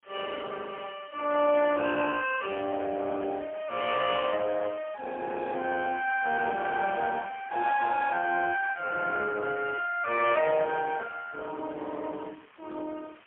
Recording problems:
phone line; 340 Hz to 2.3 kHz, AMR-NB, then MP3
hiss; SNR 27 dB

